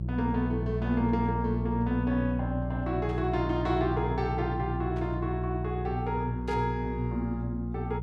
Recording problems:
electrical hum; 60 Hz, harmonics up to 360 Hz, SNR 2 dB
static burst; at 3 s, at 5 s and at 6.5 s; peak -14 dB vs average level

